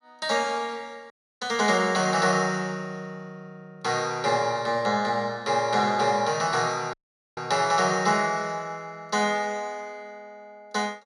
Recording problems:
audio cutting out; at 1 s and at 7 s

